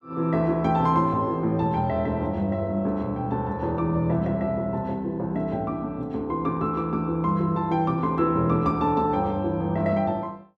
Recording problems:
none

